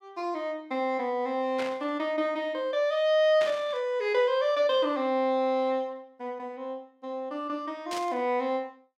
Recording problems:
burst of static; at 1.5 s, at 3.5 s and at 8 s; peak -5 dB vs average level

